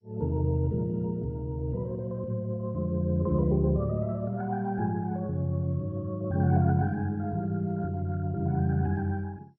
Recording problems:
codec artefacts; MP2, log-spectral distance 2 dB

